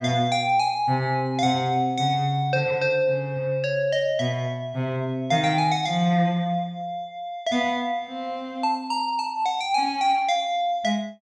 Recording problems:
none

